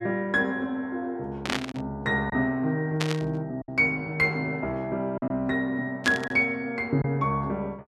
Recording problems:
packet loss; 3% of the sound replaced, filled with silence
static burst; at 1.5 s, at 3 s and at 6 s; peak +3 dB vs average level

